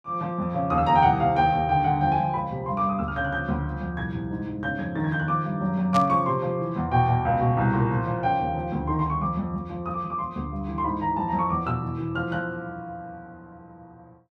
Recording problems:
static burst; at 6 s; peak -4 dB vs average level

